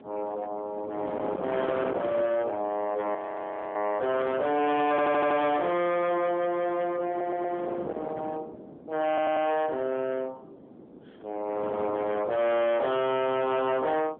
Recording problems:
telephone audio; 990 Hz to 3.5 kHz, AMR-NB
distortion; hard clipping, uneven, signal-to-distortion ratio 5 dB
wind on the microphone; below 660 Hz, SNR 14 dB
audio freezing; at 3 s for 0.5 s
audio stuttering; at 5 s, at 7 s and at 9 s

